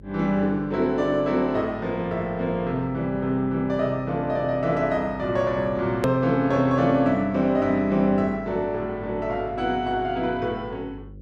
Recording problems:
hum; 50 Hz, harmonics up to 550 Hz, SNR 21 dB
edit click; at 6 s

